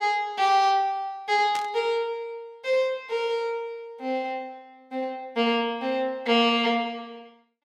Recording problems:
static burst; at 1.5 s; peak -6 dB vs average level

